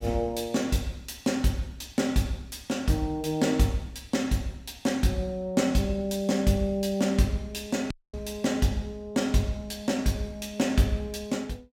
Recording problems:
dropout; at 8 s

